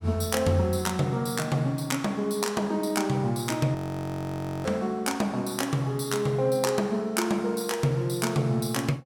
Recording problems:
frozen audio; at 4 s for 1 s

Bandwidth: 17 kHz